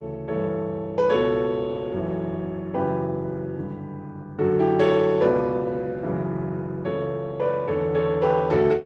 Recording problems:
codec artefacts; Opus, then Opus, log-spectral distance 2 dB

